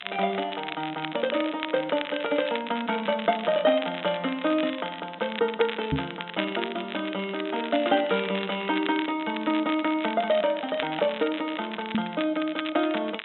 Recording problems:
treble cut off; nothing above 3.8 kHz
background hiss; SNR 27 dB
crackling; vinyl, SNR 10 dB
microphone bump; at 6 s and at 12 s; peak +5 dB vs average level

